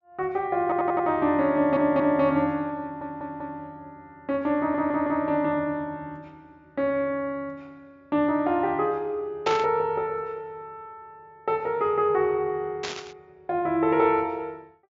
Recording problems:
treble cut off; nothing above 7.2 kHz
stutter; 4 times, first at 0.5 s
burst of static; at 9.5 s and at 13 s; peak -1 dB vs average level

